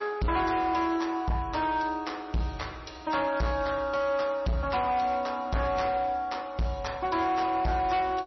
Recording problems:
lossy codec; MP3, log-spectral distance 3 dB, nothing above 5.8 kHz
distorted audio; hard clipping, signal-to-distortion ratio 10 dB

